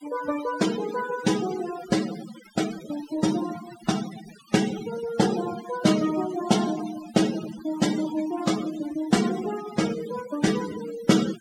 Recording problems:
denoising artefacts; signal-to-artefact ratio 11 dB

